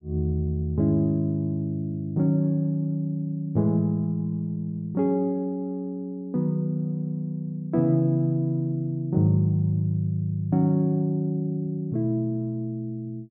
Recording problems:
none

